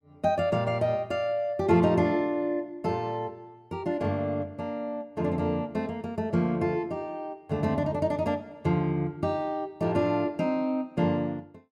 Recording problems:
none

